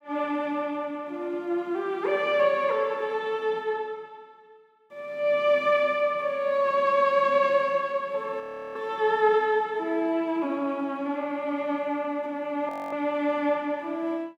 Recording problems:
frozen audio; at 8.5 s and at 13 s

